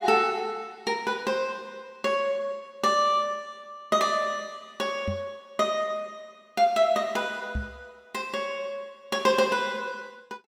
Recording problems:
knock on the microphone; at 5 s and at 7.5 s; peak -1 dB vs average level

